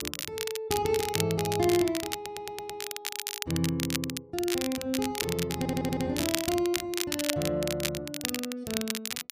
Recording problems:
crackling; vinyl, SNR 3 dB
stutter; at 2 s and at 5.5 s

